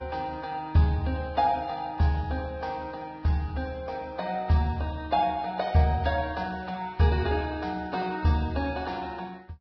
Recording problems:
lossy compression; Vorbis, log-spectral distance 3 dB, nothing above 5 kHz

